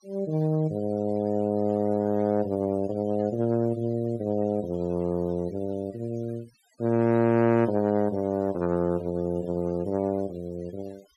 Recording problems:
noise reduction artefacts; signal-to-artefact ratio 25 dB

